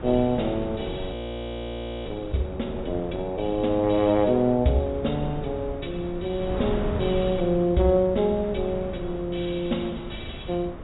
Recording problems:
treble cut off; nothing above 4 kHz
wind noise; below 360 Hz, SNR 10 dB
audio freezing; at 1 s for 1 s

